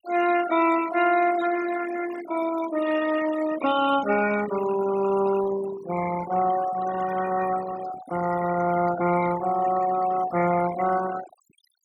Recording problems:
denoising artefacts; signal-to-artefact ratio 11 dB

